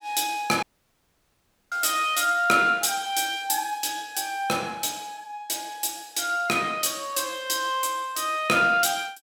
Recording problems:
dropout; at 0.5 s for 1 s

